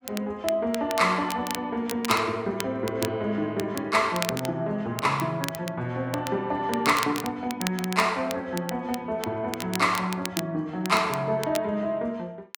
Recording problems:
crackling; vinyl, SNR 10 dB

